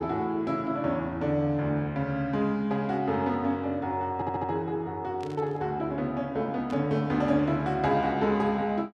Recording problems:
stutter; at 4 s
burst of static; at 5 s and at 6.5 s; peak -14 dB vs average level

